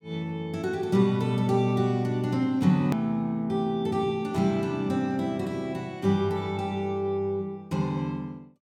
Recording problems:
edit click; at 3 s

